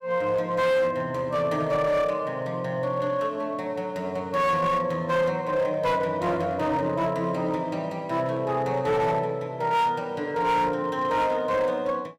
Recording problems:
distortion; hard clipping, signal-to-distortion ratio 12 dB

